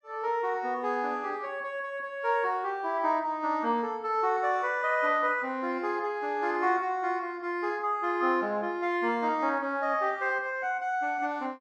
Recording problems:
none

